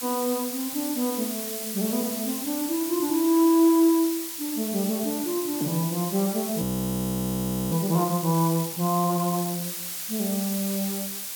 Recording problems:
background hiss; slope +2 dB per octave, SNR 6 dB
frozen audio; at 6.5 s for 1 s

